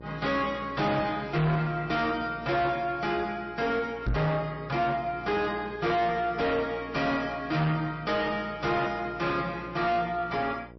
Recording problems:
lossy compression; MP3, log-spectral distance 3 dB, nothing above 5.7 kHz
distorted audio; soft clipping, signal-to-distortion ratio 5 dB
mains hum; 60 Hz, harmonics up to 1.1 kHz, SNR 18 dB
microphone thump; at 4 s; peak +2 dB vs average level

